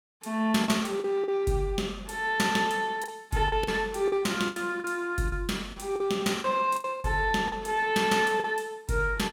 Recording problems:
packet loss; 8% of the sound replaced, filled with the last packet

